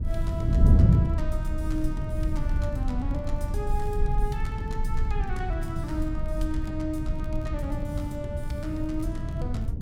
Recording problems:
rumble; below 48 Hz, strongest tone 20 Hz, SNR 1 dB
wind on the microphone; below 140 Hz, SNR -6 dB
crackling; vinyl, SNR 29 dB

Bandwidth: 17 kHz